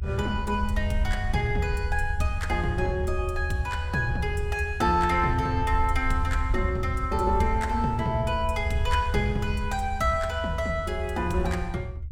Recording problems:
low-frequency rumble; below 78 Hz, SNR 4 dB

